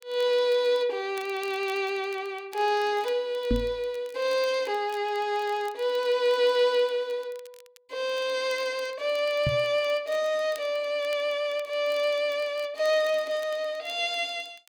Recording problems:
crackling; vinyl, SNR 26 dB
knock on the microphone; at 3.5 s and at 9.5 s; peak +3 dB vs average level

